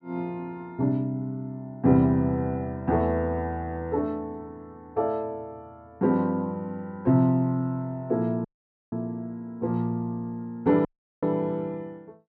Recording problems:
audio cutting out; at 8.5 s and at 11 s

